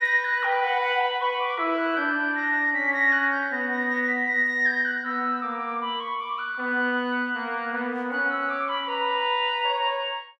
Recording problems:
none

